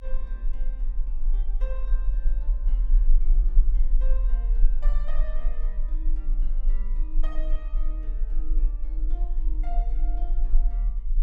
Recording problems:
low-frequency rumble; below 38 Hz, strongest tone 20 Hz, SNR -19 dB

